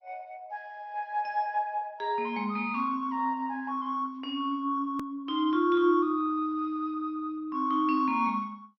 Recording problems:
lossy codec; MP2, log-spectral distance 2 dB
hard cut with a click; at 5 s

